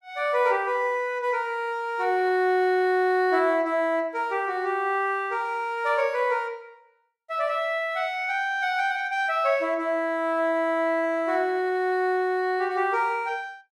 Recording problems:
none

